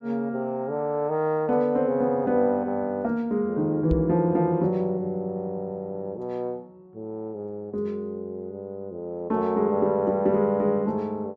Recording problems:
knock on the microphone; at 4 s; peak +2 dB vs average level

